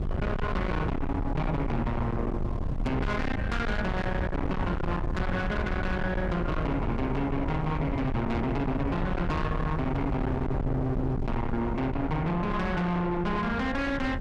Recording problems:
distorted audio; soft clipping, signal-to-distortion ratio 6 dB
rumble; below 260 Hz, SNR 3 dB

